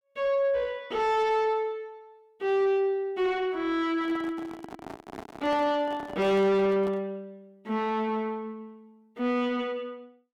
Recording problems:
distortion; soft clipping, signal-to-distortion ratio 7 dB
microphone handling noise; from 4 to 7 s; peak -6 dB vs average level

